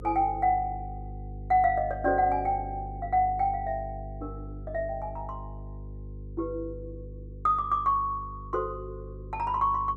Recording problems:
hum; 50 Hz, harmonics up to 500 Hz, SNR 13 dB

